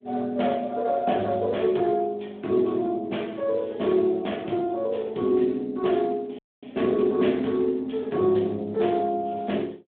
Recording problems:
telephone audio; 170 Hz to 3.6 kHz, Speex
dropout; at 6.5 s

